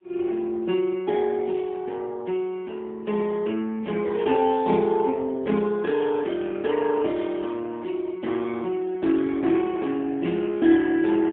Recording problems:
phone line; 170 Hz to 3.5 kHz, AMR-NB, then MP3

